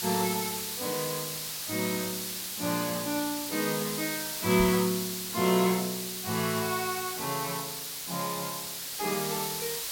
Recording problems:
hiss; slope +2 dB per octave, SNR 2 dB
knock on the microphone; at 4.5 s; peak -2 dB vs average level

